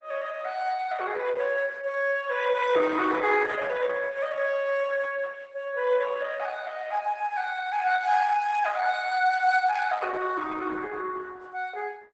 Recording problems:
lossy codec; Opus, log-spectral distance 4 dB, nothing above 8 kHz

